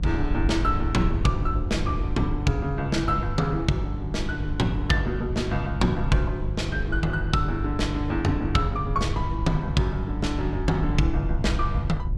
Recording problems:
electrical hum; 50 Hz, harmonics up to 550 Hz, SNR 7 dB
wind on the microphone; below 74 Hz, SNR 6 dB

